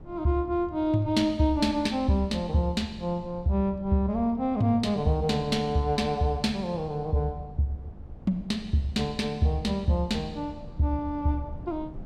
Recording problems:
low-frequency rumble; below 180 Hz, SNR 19 dB

